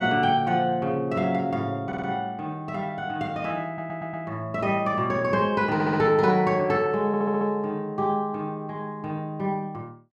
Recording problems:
audio stuttering; 4 times, first at 2 s

